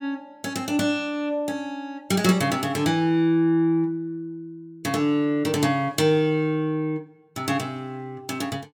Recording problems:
none

